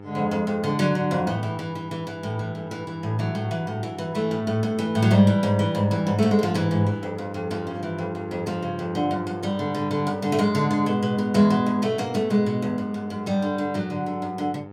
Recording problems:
hum; 50 Hz, harmonics up to 1.8 kHz, SNR 15 dB

